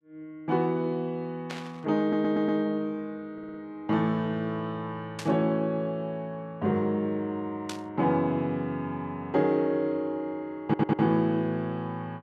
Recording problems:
static burst; at 1.5 s, at 5 s and at 7.5 s; peak -5 dB vs average level
audio stuttering; at 2 s, at 3.5 s and at 11 s

